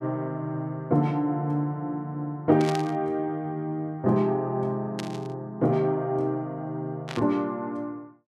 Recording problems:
burst of static; at 2.5 s, at 5 s and at 7 s; peak -4 dB vs average level

